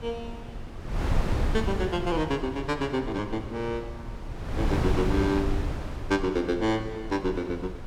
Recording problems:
wind on the microphone; below 220 Hz, SNR 4 dB

